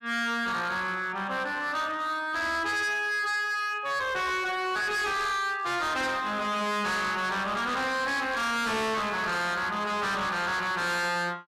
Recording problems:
distortion; hard clipping, signal-to-distortion ratio 7 dB

